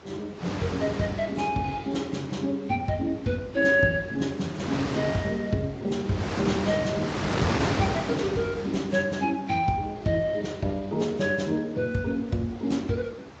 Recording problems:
codec artefacts; Speex, then AAC, log-spectral distance 3 dB, nothing above 7.3 kHz
wind noise; below 1.6 kHz, SNR 4 dB

